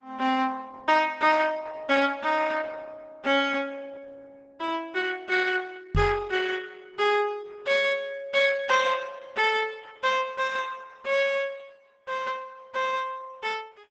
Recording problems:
lossy compression; Opus, log-spectral distance 4 dB, nothing above 7.8 kHz
microphone thump; at 6 s; peak +3 dB vs average level

